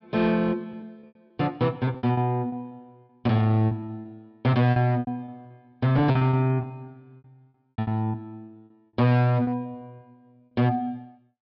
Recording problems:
low-pass filter; nothing above 5.5 kHz
distortion; hard clipping, uneven, signal-to-distortion ratio 10 dB
packet loss; 12% of the sound replaced, filled with repeated pitch periods

